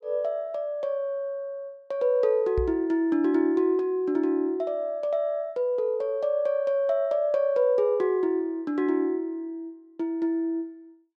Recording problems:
microphone bump; at 2.5 s; peak 0 dB vs average level

